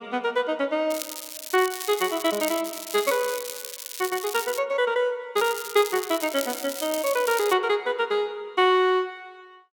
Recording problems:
crackle; from 1 to 4.5 s and from 5.5 to 7.5 s; loose cable, SNR 9 dB

